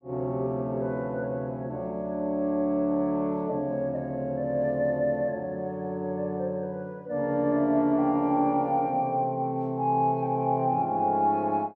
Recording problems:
none

